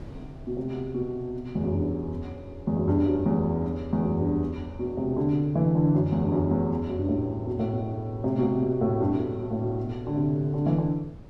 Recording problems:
wind on the microphone; below 260 Hz, SNR 21 dB

